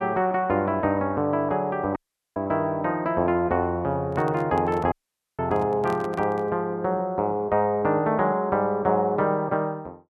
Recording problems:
dropout; at 2 s and at 5 s
microphone handling noise; from 4 to 6.5 s; peak -9 dB vs average level

